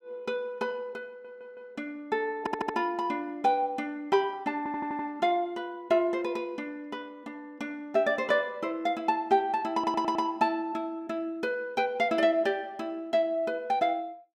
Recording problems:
audio stuttering; 4 times, first at 1 s

